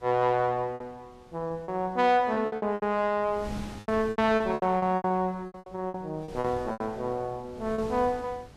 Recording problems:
wind noise; below 530 Hz, SNR 19 dB
lost packets; 14% of the sound replaced, filled with repeated pitch periods

